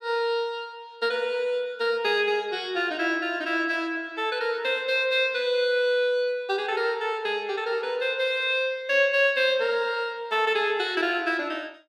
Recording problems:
none

